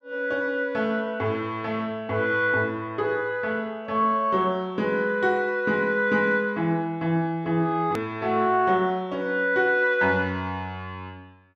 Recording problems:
click at an edit; at 8 s

